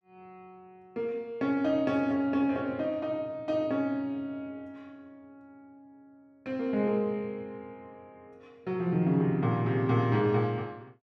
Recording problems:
none

